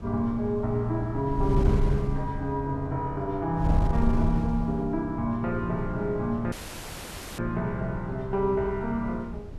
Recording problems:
wind noise; below 110 Hz, SNR 5 dB
dropout; at 6.5 s for 1 s

